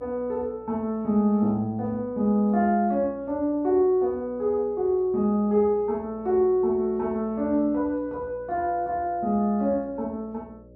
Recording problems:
electrical hum; 60 Hz, harmonics up to 600 Hz, SNR 25 dB

